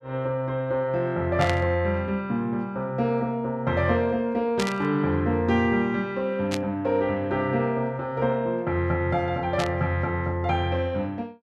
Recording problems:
static burst; 4 times, first at 1.5 s; peak -1 dB vs average level

